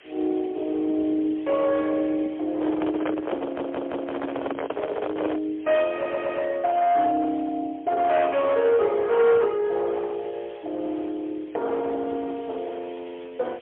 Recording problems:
phone line; 280 Hz to 2.8 kHz, AMR-NB, then MP3
distorted audio; hard clipping, signal-to-distortion ratio 13 dB
hiss; SNR 25 dB
handling noise; from 2.5 to 5.5 s; peak 0 dB vs average level
stutter; at 3.5 s and at 6 s

